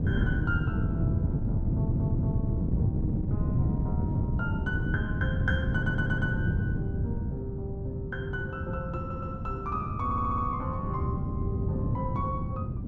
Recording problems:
wind on the microphone; below 190 Hz, SNR -6 dB
audio stuttering; 4 times, first at 1.5 s

